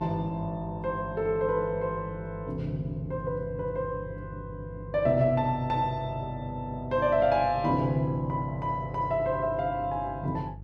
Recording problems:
electrical hum; 50 Hz, harmonics up to 500 Hz, SNR 14 dB

